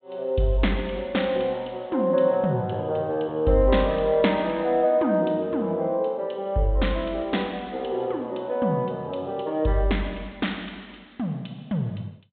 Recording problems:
treble cut off; nothing above 4 kHz

